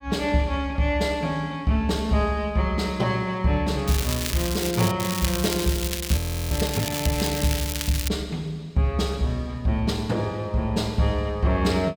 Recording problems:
crackle; from 4 to 5 s and from 5 to 8 s; loose cable, SNR 5 dB
frozen audio; at 6 s

